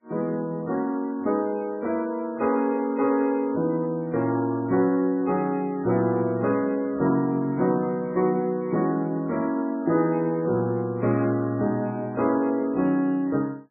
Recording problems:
codec artefacts; MP3, log-spectral distance 2 dB, nothing above 2.5 kHz

